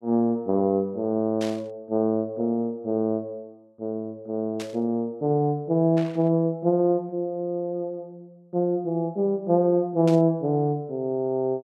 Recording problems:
burst of static; 4 times, first at 1.5 s; peak -8 dB vs average level

